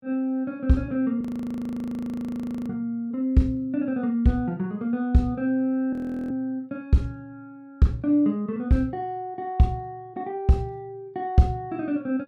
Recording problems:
audio freezing; at 1 s for 1.5 s and at 6 s

